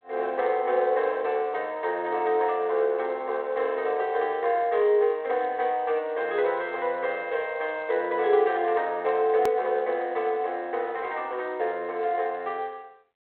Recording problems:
phone line; 320 Hz to 3.7 kHz, G.726
hard cut with a click; at 9.5 s

